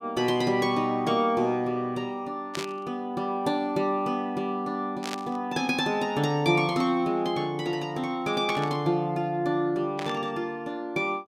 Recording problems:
static burst; 4 times, first at 2.5 s; peak -3 dB vs average level

